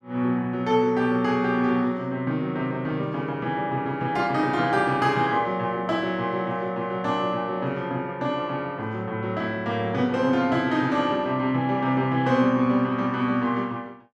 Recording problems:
none

